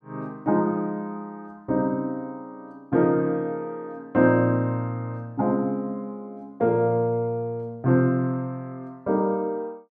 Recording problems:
none

